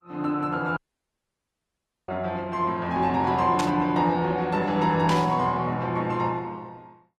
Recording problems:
codec artefacts; Opus, log-spectral distance 2 dB
dropout; at 1 s for 1.5 s
burst of static; at 3.5 s and at 5 s; peak -4 dB vs average level

